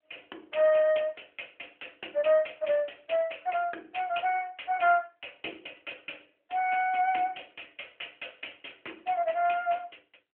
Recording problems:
telephone audio; 280 Hz to 3.2 kHz, AMR-NB

